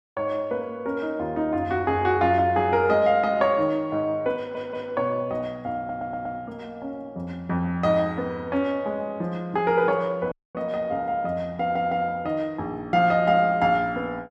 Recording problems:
stutter; at 4.5 s, at 6 s and at 12 s
dropout; at 10 s

